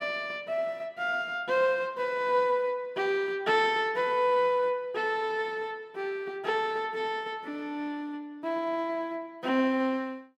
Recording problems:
none

